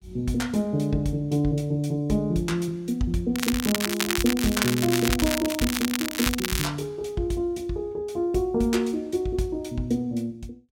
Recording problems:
crackle; from 3.5 to 6.5 s; loose cable, SNR 2 dB

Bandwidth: 16.5 kHz